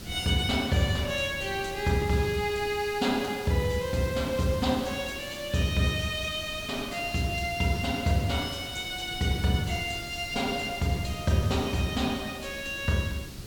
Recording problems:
background hiss; slope +1 dB per octave, SNR 16 dB
wind noise; below 240 Hz, SNR 17 dB

